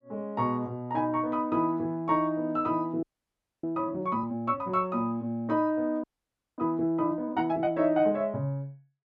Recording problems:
frozen audio; at 3 s for 0.5 s and at 6 s for 0.5 s

